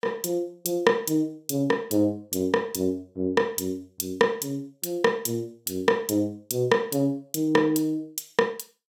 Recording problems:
none

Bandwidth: 16.5 kHz